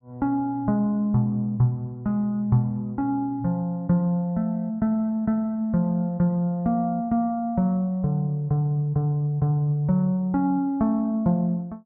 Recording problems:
none

